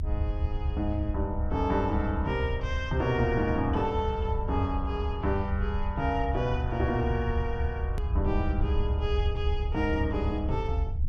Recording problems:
rumble; below 76 Hz, SNR 1 dB
hard cut with a click; at 8 s

